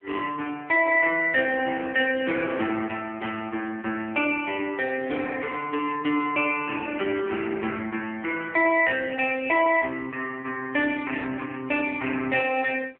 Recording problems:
telephone audio; 300 Hz to 3.6 kHz, AMR-NB

